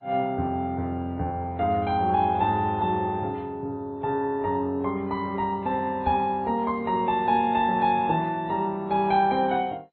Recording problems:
lossy compression; MP3, then MP2, log-spectral distance 2 dB, nothing above 3.6 kHz
knock on the microphone; at 6 s; peak -2 dB vs average level

